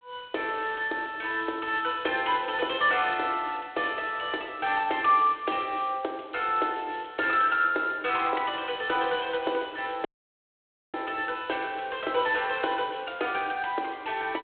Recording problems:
telephone audio; 280 Hz to 3.5 kHz, G.726
audio cutting out; at 10 s for 1 s

